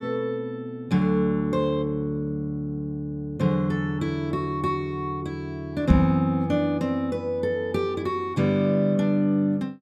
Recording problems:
knock on the microphone; at 6 s; peak +9 dB vs average level

